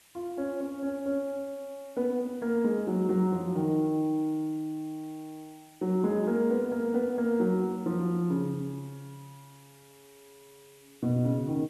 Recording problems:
hiss; SNR 27 dB

